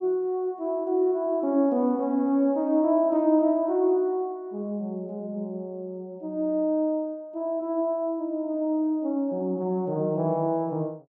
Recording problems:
none

